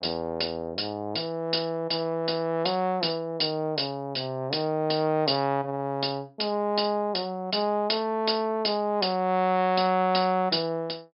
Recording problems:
treble missing; nothing above 5.5 kHz

